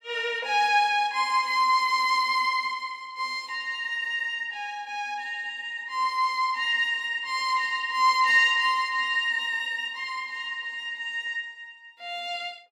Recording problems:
none

